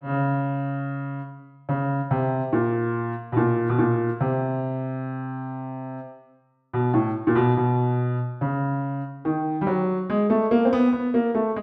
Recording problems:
none

